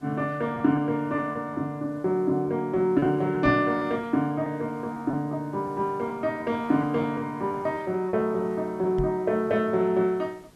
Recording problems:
hiss; SNR 29 dB
packet loss; 6% of the sound replaced, filled with repeated pitch periods
microphone thump; at 3.5 s and at 9 s; peak 0 dB vs average level

